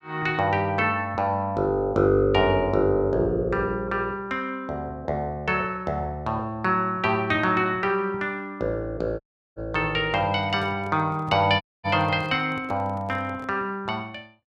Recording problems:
audio cutting out; at 9 s and at 12 s
handling noise; from 10 to 14 s; peak -12 dB vs average level

